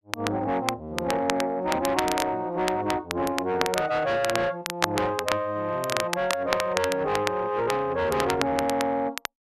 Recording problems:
distortion; soft clipping, signal-to-distortion ratio 10 dB
crackle; vinyl, SNR 6 dB

